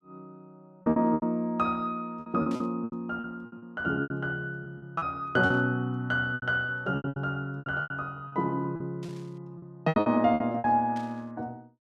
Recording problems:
lost packets; 14% of the sound replaced, filled with repeated pitch periods
static burst; 4 times, first at 2.5 s; peak -14 dB vs average level

